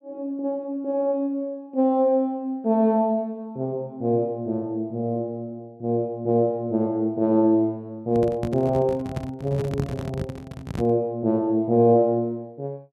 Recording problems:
microphone handling noise; from 8 to 11 s; peak -1 dB vs average level

